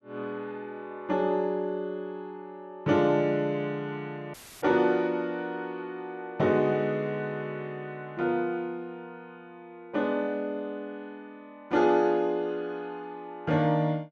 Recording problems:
audio cutting out; at 4.5 s; filled with static

